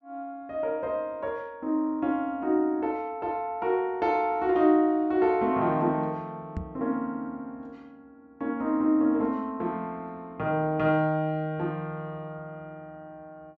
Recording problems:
treble missing; nothing above 8 kHz
microphone thump; at 6.5 s; peak -2 dB vs average level

